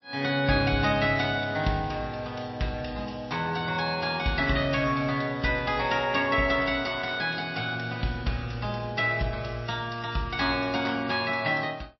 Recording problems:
codec artefacts; MP3, log-spectral distance 4 dB, nothing above 5.7 kHz

